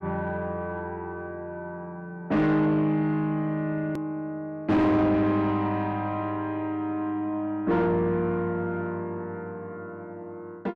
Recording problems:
distortion; soft clipping, signal-to-distortion ratio 6 dB
edit click; at 4 s

